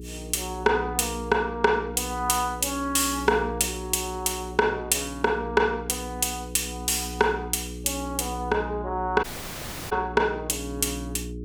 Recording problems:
hum; 60 Hz, harmonics up to 420 Hz, SNR 11 dB
dropout; at 9 s for 0.5 s

